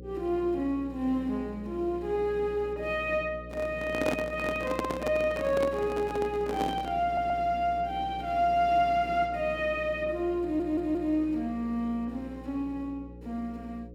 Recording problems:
hum; 60 Hz, harmonics up to 540 Hz, SNR 15 dB
microphone handling noise; from 3.5 to 7 s; peak +2 dB vs average level
audio stuttering; at 7 s and at 10 s

